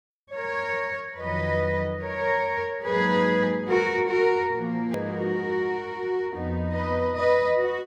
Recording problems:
hard cut with a click; at 5 s

